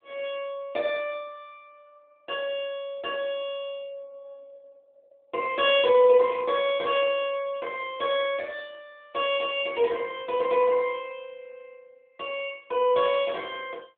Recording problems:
phone line; 280 Hz to 3.7 kHz, AMR-NB

